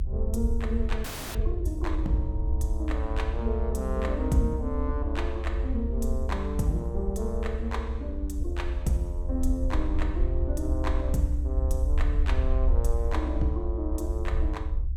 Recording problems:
low-frequency rumble; below 66 Hz, SNR -3 dB
audio freezing; at 1 s

